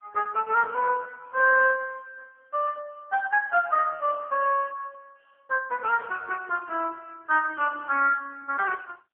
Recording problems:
phone line; 300 Hz to 2.6 kHz, AMR-NB

